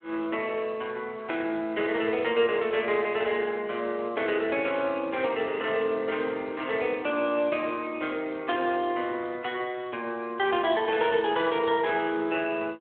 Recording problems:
phone line; 300 Hz to 3.4 kHz, Speex

